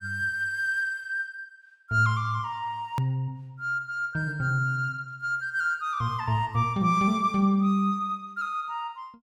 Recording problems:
edit click; at 3 s

